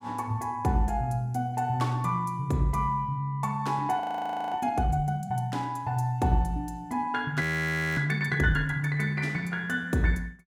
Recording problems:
frozen audio; at 4 s for 0.5 s and at 7.5 s for 0.5 s

